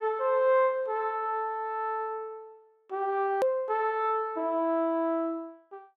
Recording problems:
hard cut with a click; at 3.5 s

